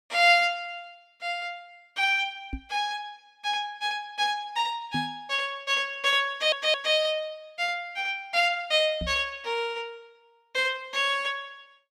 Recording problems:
microphone bump; at 2.5 s, at 5 s and at 9 s; peak -3 dB vs average level
audio stuttering; at 6.5 s

